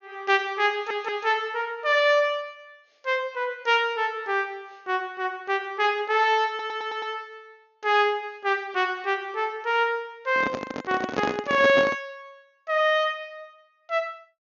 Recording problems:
treble cut off; nothing above 6.8 kHz
stutter; at 0.5 s and at 6.5 s
handling noise; from 10 to 12 s; peak +1 dB vs average level

